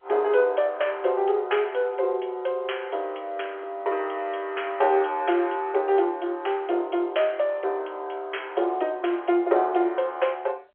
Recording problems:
telephone audio; 320 Hz to 3.3 kHz, G.711

